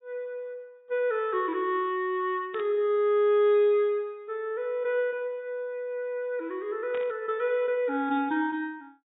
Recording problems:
treble missing; nothing above 4 kHz
static burst; at 2.5 s and at 7 s; peak -11 dB vs average level

